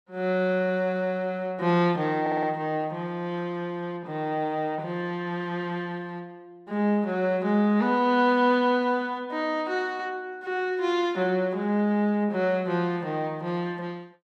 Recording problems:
stutter; at 2 s

